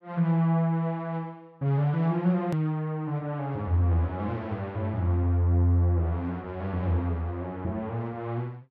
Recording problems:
edit click; at 2.5 s

